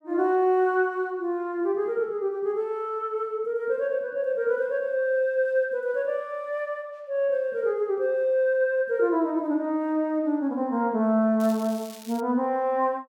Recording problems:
crackle; at 11 s; loose cable, SNR 19 dB

